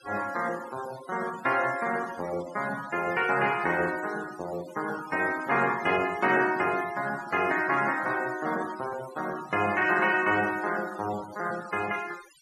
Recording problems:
denoising artefacts; signal-to-artefact ratio 17 dB

